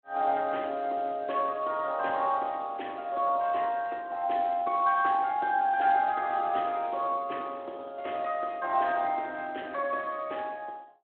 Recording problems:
phone line; 300 Hz to 3.6 kHz, Speex

